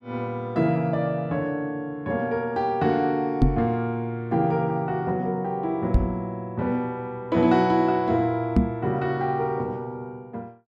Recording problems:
microphone bump; at 3.5 s, at 6 s and at 8.5 s; peak +9 dB vs average level

